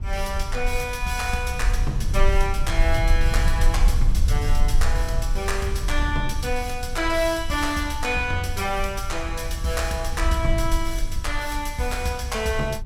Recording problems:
rumble; below 56 Hz, strongest tone 22 Hz, SNR 1 dB

